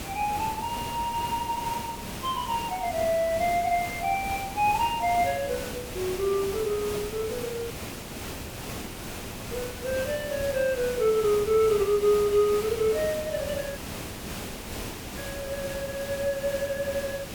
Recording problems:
background hiss; slope -4 dB per octave, SNR 8 dB
dropout; at 7.5 s for 2 s and at 14 s for 1.5 s

